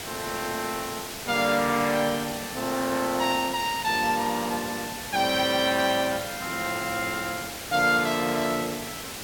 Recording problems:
background hiss; slope -2 dB per octave, SNR 8 dB

